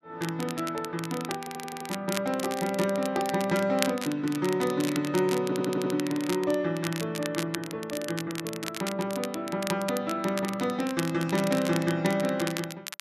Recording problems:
crackle; vinyl, SNR 9 dB
stutter; at 1.5 s and at 5.5 s

